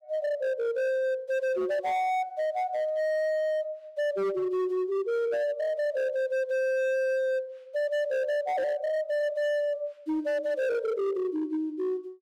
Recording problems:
distorted audio; hard clipping, signal-to-distortion ratio 11 dB

